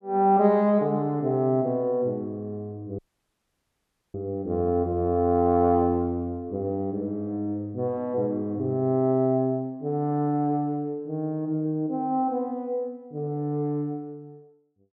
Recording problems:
audio cutting out; at 3 s for 1 s

